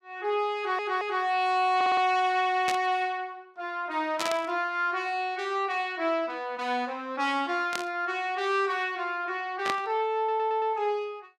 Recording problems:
stutter; at 0.5 s, at 2 s and at 10 s
static burst; 4 times, first at 2.5 s; peak +1 dB vs average level

